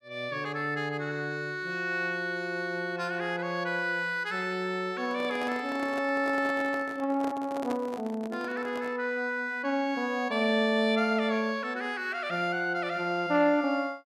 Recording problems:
handling noise; from 5 to 9 s; peak -4 dB vs average level

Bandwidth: 14.5 kHz